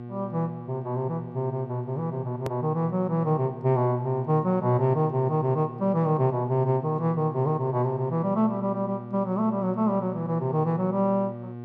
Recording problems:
hum; 60 Hz, harmonics up to 1.1 kHz, SNR 13 dB
hard cut with a click; at 2.5 s

